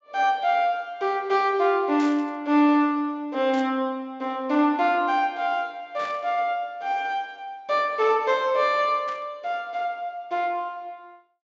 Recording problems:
low-pass filter; nothing above 8 kHz
burst of static; 4 times, first at 2 s; peak -12 dB vs average level

